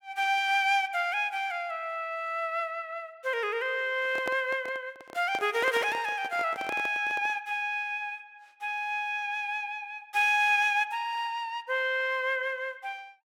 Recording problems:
handling noise; from 4 to 7.5 s; peak -3 dB vs average level

